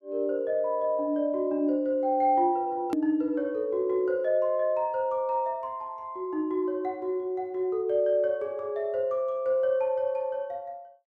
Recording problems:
edit click; at 3 s

